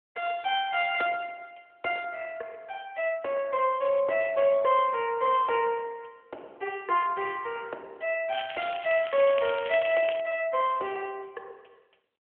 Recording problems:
phone line; 320 Hz to 3.3 kHz, AMR-NB
crackling; from 8.5 to 10 s; loose cable, SNR 12 dB

